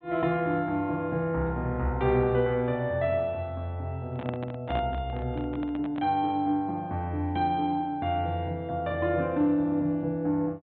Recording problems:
low-pass filter; nothing above 4 kHz
microphone handling noise; from 4 to 6 s; peak -4 dB vs average level

